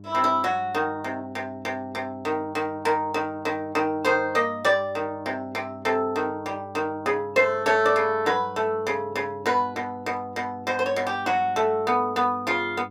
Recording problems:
hum; 50 Hz, harmonics up to 700 Hz, SNR 20 dB

